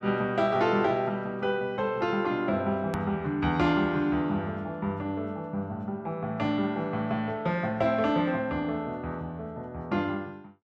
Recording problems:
click at an edit; at 3 s

